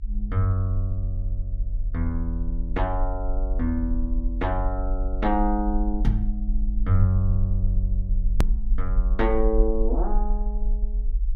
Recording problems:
low-frequency rumble; below 46 Hz, SNR 0 dB
click at an edit; at 8.5 s

